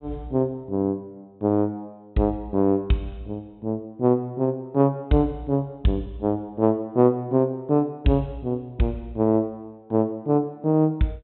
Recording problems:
treble missing; nothing above 3.9 kHz

